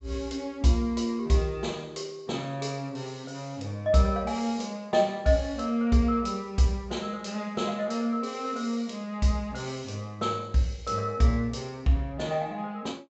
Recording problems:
treble cut off; nothing above 7.8 kHz

